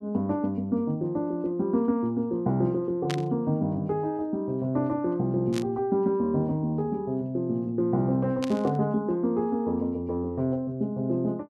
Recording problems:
static burst; at 3 s, at 5.5 s and at 8.5 s; peak -3 dB vs average level

